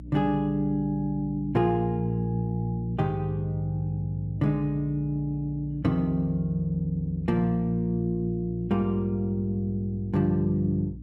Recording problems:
mains hum; 60 Hz, harmonics up to 300 Hz, SNR 14 dB

